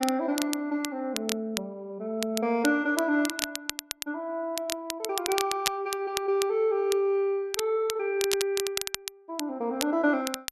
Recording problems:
crackle; vinyl, SNR 6 dB

